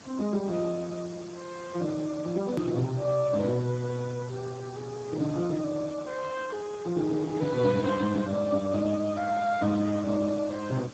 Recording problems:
lossy codec; Speex, log-spectral distance 7 dB, nothing above 13.1 kHz
background hiss; slope -4 dB per octave, SNR 19 dB
click at an edit; at 2.5 s

